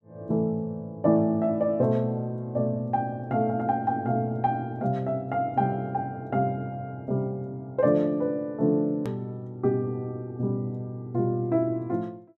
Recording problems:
hard cut with a click; at 9 s

